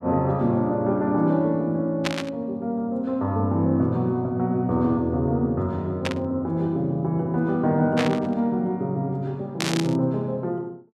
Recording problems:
burst of static; 4 times, first at 2 s; peak +2 dB vs average level

